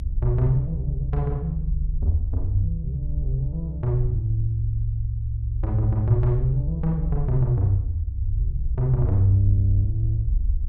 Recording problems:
rumble; below 66 Hz, SNR 4 dB

